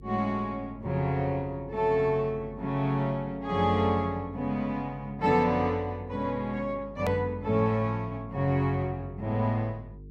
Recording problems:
hum; 50 Hz, harmonics up to 450 Hz, SNR 19 dB
hard cut with a click; at 7 s

